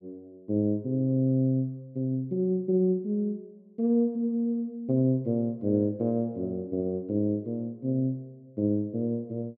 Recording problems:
none

